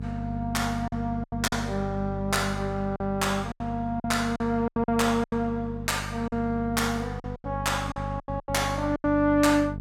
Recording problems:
mains hum; 50 Hz, harmonics up to 500 Hz, SNR 8 dB
packet loss; 10% of the sound replaced, filled with silence

